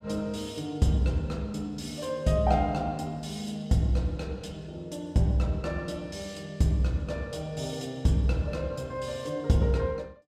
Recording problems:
none

